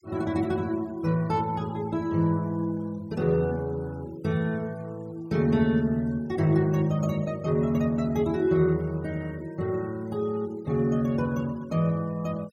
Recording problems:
denoising artefacts; signal-to-artefact ratio 27 dB

